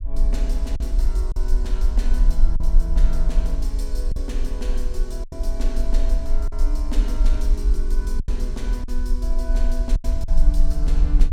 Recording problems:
rumble; below 42 Hz, strongest tone 24 Hz, SNR -10 dB
lost packets; 5% of the sound replaced, filled with silence

